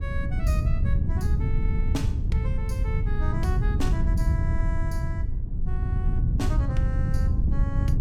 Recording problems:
wind on the microphone; below 110 Hz, SNR -10 dB

